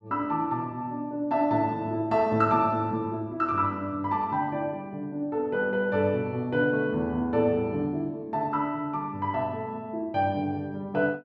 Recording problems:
none

